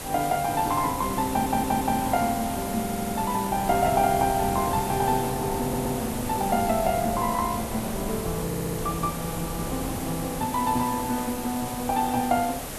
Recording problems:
background hiss; SNR 9 dB
wind noise; below 510 Hz, SNR 9 dB
stutter; 4 times, first at 1.5 s

